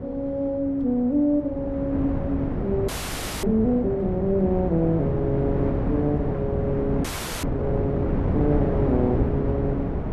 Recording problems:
wind noise; below 350 Hz, SNR 2 dB
audio freezing; at 3 s for 0.5 s and at 7 s

